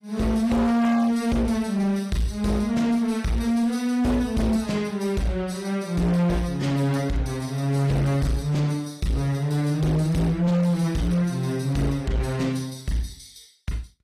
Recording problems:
lossy compression; AAC, log-spectral distance 2 dB, nothing above 13.8 kHz
distorted audio; hard clipping, signal-to-distortion ratio 6 dB

